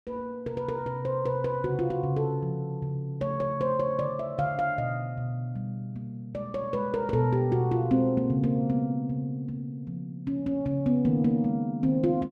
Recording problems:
none

